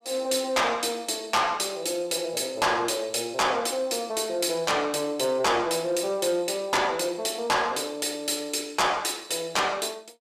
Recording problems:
distortion; soft clipping, signal-to-distortion ratio 12 dB

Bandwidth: 15 kHz